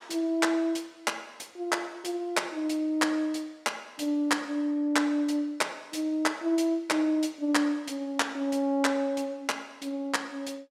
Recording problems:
none

